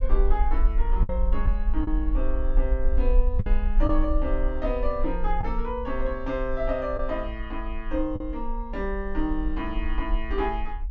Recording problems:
treble missing; nothing above 8 kHz
low-frequency rumble; below 46 Hz, strongest tone 26 Hz, SNR -1 dB
lost packets; 2% of the sound replaced, filled with the last packet

